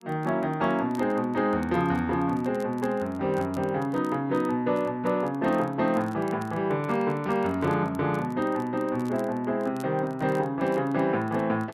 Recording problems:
crackling; vinyl, SNR 29 dB

